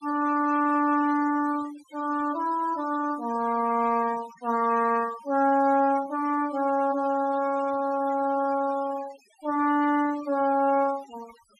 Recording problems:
noise reduction artefacts; signal-to-artefact ratio 19 dB

